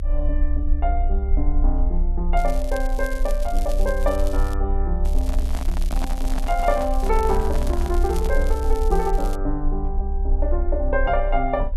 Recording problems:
rumble; below 60 Hz, strongest tone 28 Hz, SNR -1 dB
crackle; from 2.5 to 4.5 s and from 5 to 9.5 s; loose cable, SNR 16 dB
handling noise; from 5 to 8.5 s; peak 0 dB vs average level

